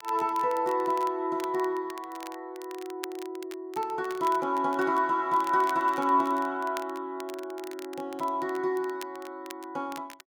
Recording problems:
crackle; vinyl, SNR 19 dB

